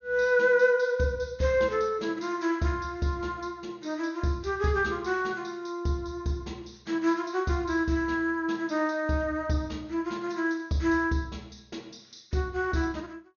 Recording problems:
treble missing; nothing above 6.7 kHz

